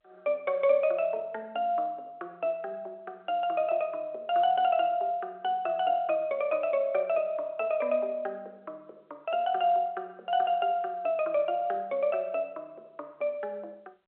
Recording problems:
phone line; 320 Hz to 4 kHz, G.711

